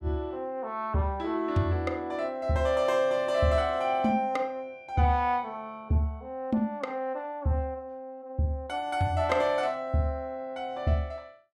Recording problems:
none

